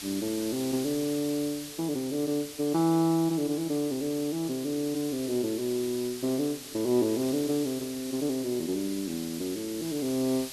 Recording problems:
background hiss; slope +1 dB per octave, SNR 11 dB

